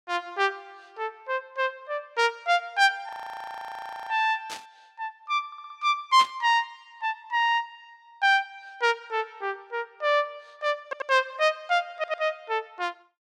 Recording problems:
frozen audio; at 3 s for 1 s
burst of static; at 4.5 s and at 6 s; peak -3 dB vs average level
audio stuttering; at 5.5 s, at 11 s and at 12 s

